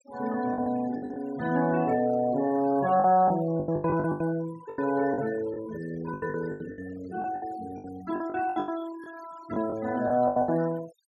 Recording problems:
noise reduction artefacts; signal-to-artefact ratio 18 dB
lost packets; 14% of the sound replaced, filled with the last packet

